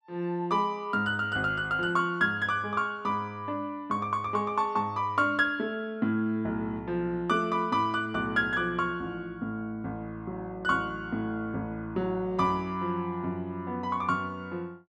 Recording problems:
none

